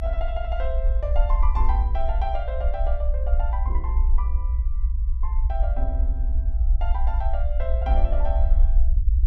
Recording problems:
rumble; below 58 Hz, SNR -9 dB

